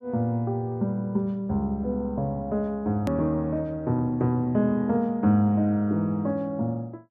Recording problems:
hard cut with a click; at 3 s

